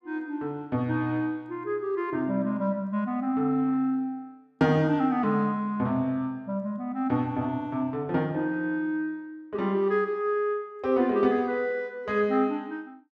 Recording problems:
none

